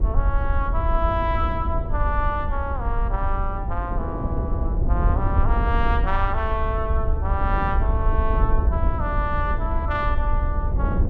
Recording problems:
low-frequency rumble; below 66 Hz, SNR -1 dB
wind noise; below 310 Hz, SNR 5 dB

